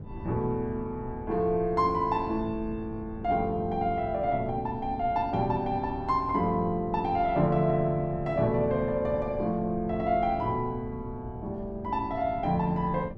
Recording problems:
wind on the microphone; below 190 Hz, SNR 14 dB

